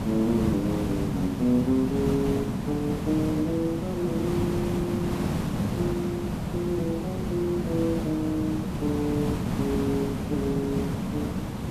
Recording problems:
background hiss; slope -7 dB per octave, SNR 0 dB

